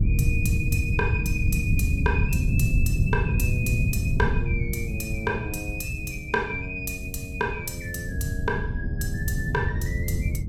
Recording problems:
wind on the microphone; below 140 Hz, SNR -3 dB

